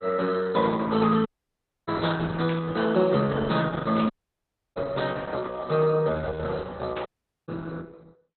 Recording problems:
lossy codec; Opus, log-spectral distance 4 dB, nothing above 4.1 kHz
audio cutting out; at 1.5 s for 0.5 s, at 4 s for 0.5 s and at 7 s
burst of static; at 2.5 s, at 4 s and at 7 s; peak -9 dB vs average level

